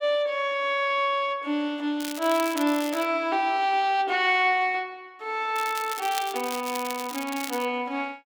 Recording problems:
crackle; from 2 to 3 s and from 5.5 to 7.5 s; loose cable, SNR 11 dB

